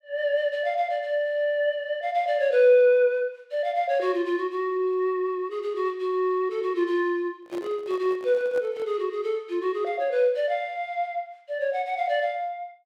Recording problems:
microphone handling noise; from 7.5 to 9 s; peak -11 dB vs average level

